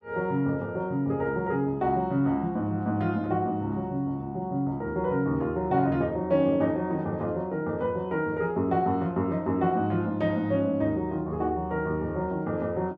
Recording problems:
none

